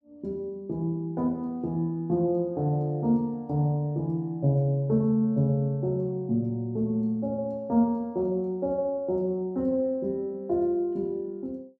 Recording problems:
none

